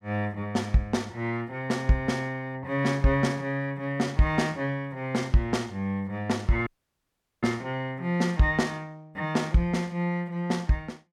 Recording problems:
audio cutting out; at 6.5 s for 1 s

